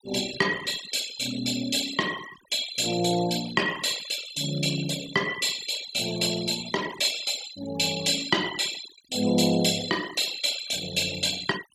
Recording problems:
noise reduction artefacts; signal-to-artefact ratio 12 dB

